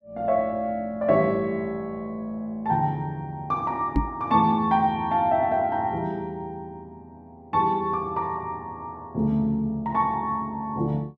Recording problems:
microphone thump; at 4 s; peak +6 dB vs average level

